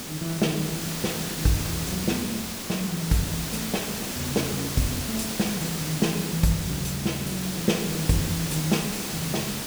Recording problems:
background hiss; SNR 2 dB

